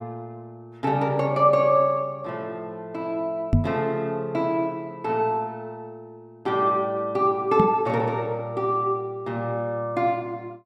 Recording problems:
microphone bump; at 3.5 s and at 7.5 s; peak +8 dB vs average level

